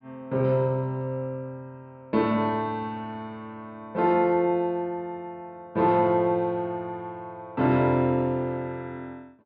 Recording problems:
treble cut off; nothing above 5.5 kHz

